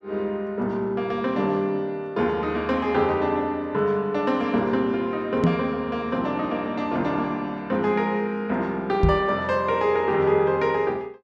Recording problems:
microphone bump; at 5.5 s and at 9 s; peak +7 dB vs average level

